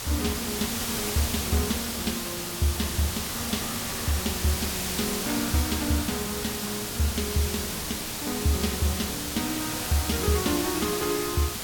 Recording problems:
background hiss; slope -1 dB per octave, SNR 0 dB

